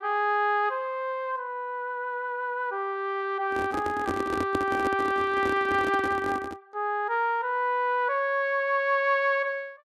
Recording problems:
microphone handling noise; from 3.5 to 6.5 s; peak +2 dB vs average level

